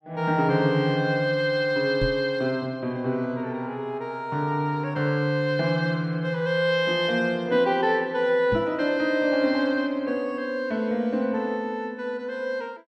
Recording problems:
knock on the microphone; at 2 s and at 8.5 s; peak -1 dB vs average level

